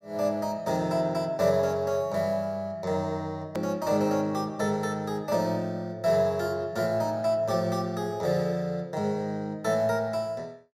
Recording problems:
hard cut with a click; at 3.5 s

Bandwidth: 16 kHz